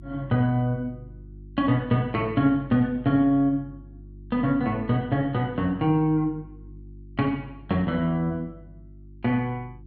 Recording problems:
hum; 50 Hz, harmonics up to 350 Hz, SNR 20 dB

